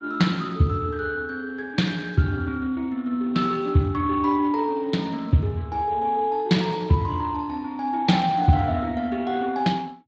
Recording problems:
codec artefacts; Speex, log-spectral distance 3 dB

